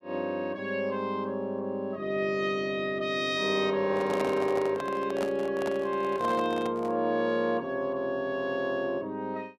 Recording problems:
microphone handling noise; from 4 to 7 s; peak 0 dB vs average level

